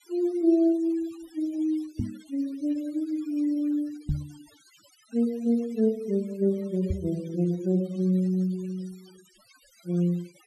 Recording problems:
noise reduction artefacts; signal-to-artefact ratio 25 dB
knock on the microphone; at 2 s, at 4 s and at 7 s; peak +3 dB vs average level

